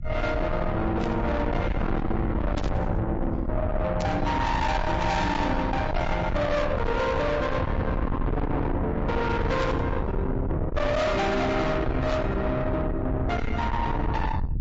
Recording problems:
treble missing; nothing above 7.6 kHz
lossy compression; Vorbis, then MP3, log-spectral distance 2 dB
distorted audio; soft clipping, signal-to-distortion ratio 6 dB
low-frequency rumble; below 470 Hz, SNR 3 dB
burst of static; 5 times, first at 1 s; peak -8 dB vs average level

